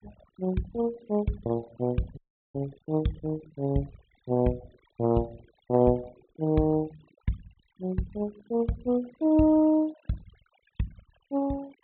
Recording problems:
low-pass filter; nothing above 4 kHz
denoising artefacts; signal-to-artefact ratio 23 dB
dropout; at 2 s

